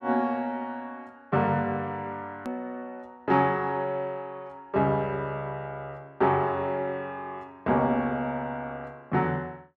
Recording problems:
edit click; at 2.5 s

